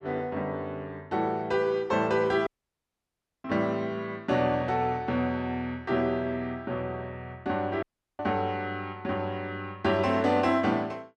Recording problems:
dropout; at 2.5 s for 1 s and at 8 s

